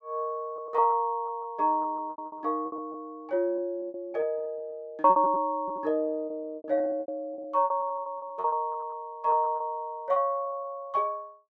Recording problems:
packet loss; 15% of the sound replaced, filled with repeated pitch periods

